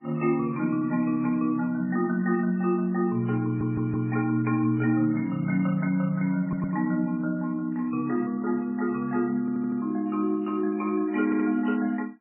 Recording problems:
codec artefacts; MP3, log-spectral distance 2 dB, nothing above 2.5 kHz
stutter; 4 times, first at 3.5 s

